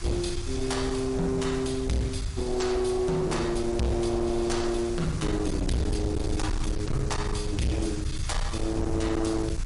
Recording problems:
lossy codec; MP3, log-spectral distance 3 dB, nothing above 11 kHz
distortion; hard clipping, uneven, signal-to-distortion ratio 7 dB
background hiss; SNR 16 dB
rumble; below 110 Hz, SNR 5 dB

